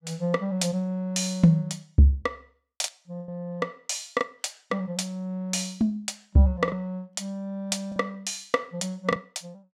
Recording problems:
packet loss; 3% of the sound replaced, filled with the last packet

